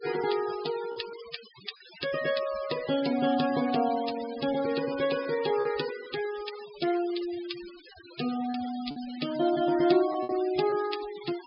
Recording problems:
treble missing; nothing above 5.5 kHz
denoising artefacts; signal-to-artefact ratio 13 dB
lost packets; 3% of the sound replaced, filled with repeated pitch periods

